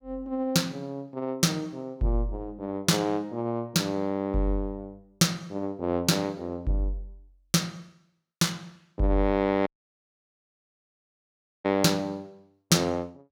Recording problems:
audio cutting out; at 9.5 s for 2 s

